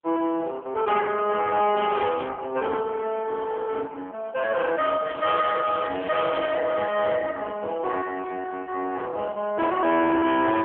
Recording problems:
telephone audio; 240 Hz to 3.3 kHz, AMR-NB
distorted audio; soft clipping, signal-to-distortion ratio 10 dB
crackling; at 1.5 s and from 5 to 6.5 s; loose cable, SNR 17 dB

